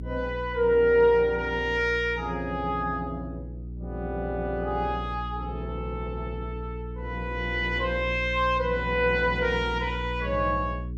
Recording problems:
hum; 60 Hz, harmonics up to 420 Hz, SNR 10 dB

